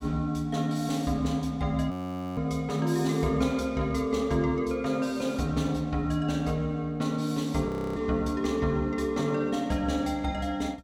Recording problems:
frozen audio; at 2 s and at 7.5 s

